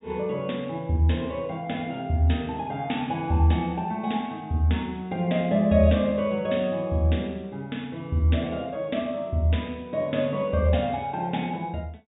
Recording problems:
low-pass filter; nothing above 4 kHz

